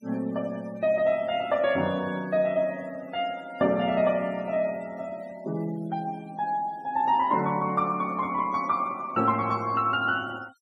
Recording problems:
noise reduction artefacts; signal-to-artefact ratio 24 dB

